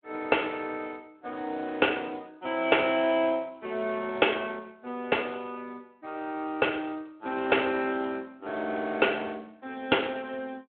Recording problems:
telephone audio; 220 Hz to 3.4 kHz, Speex

